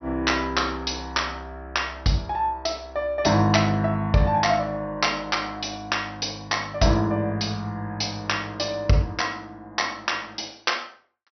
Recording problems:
treble missing; nothing above 5.9 kHz

